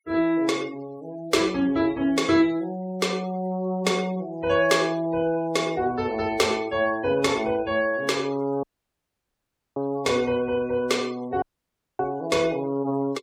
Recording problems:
denoising artefacts; signal-to-artefact ratio 21 dB
dropout; at 8.5 s for 1 s and at 11 s for 0.5 s

